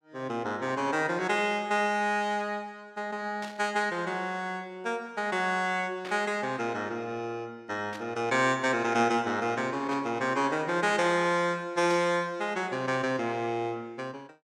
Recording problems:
static burst; 5 times, first at 3.5 s; peak -9 dB vs average level

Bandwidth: 16 kHz